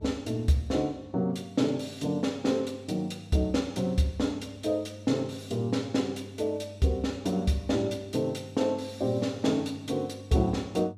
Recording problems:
hum; 50 Hz, harmonics up to 500 Hz, SNR 19 dB

